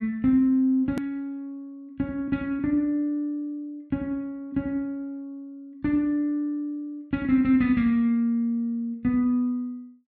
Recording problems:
edit click; at 1 s

